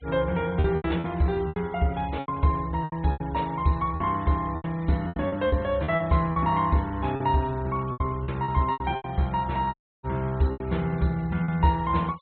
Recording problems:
treble missing; nothing above 4 kHz
noise reduction artefacts; signal-to-artefact ratio 24 dB
packet loss; 12% of the sound replaced, filled with repeated pitch periods
dropout; at 9.5 s

